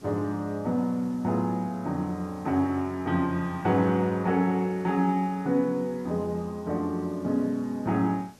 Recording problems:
background hiss; SNR 26 dB

